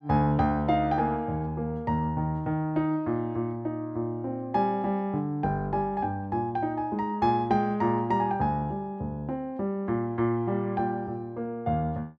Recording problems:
none

